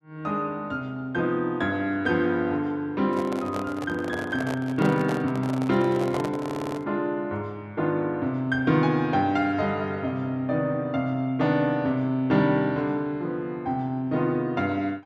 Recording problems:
microphone handling noise; from 3 to 7 s; peak -3 dB vs average level
stutter; at 6.5 s

